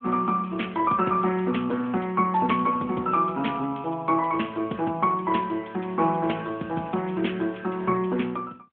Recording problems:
telephone audio; 170 Hz to 3.4 kHz, AMR-NB

